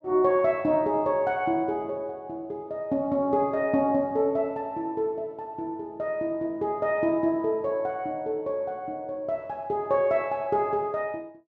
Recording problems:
none

